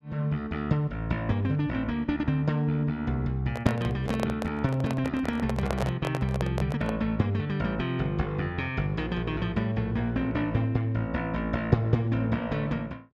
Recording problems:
handling noise; from 3.5 to 7 s; peak +2 dB vs average level

